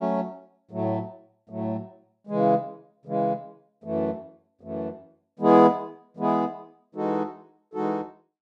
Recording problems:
none

